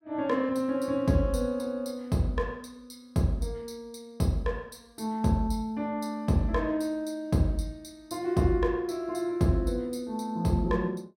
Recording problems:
none

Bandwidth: 16 kHz